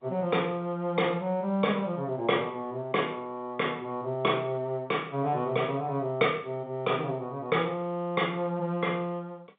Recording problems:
telephone audio; 150 Hz to 3.6 kHz, G.711

